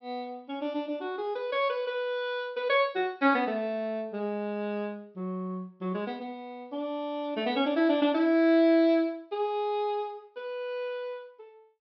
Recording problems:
treble cut off; nothing above 5.5 kHz

